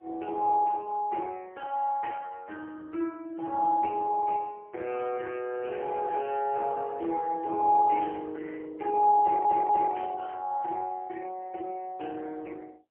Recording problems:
phone line; 280 Hz to 3.6 kHz, AMR-NB, then MP3
burst of static; 4 times, first at 2 s; peak -15 dB vs average level
stutter; at 9 s

